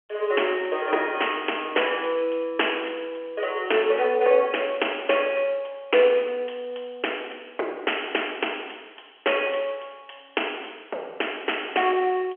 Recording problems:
telephone audio; 320 Hz to 3.3 kHz, G.711

